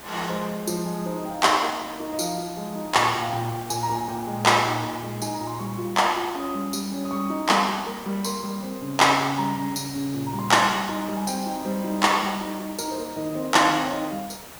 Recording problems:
background hiss; slope -3 dB per octave, SNR 17 dB

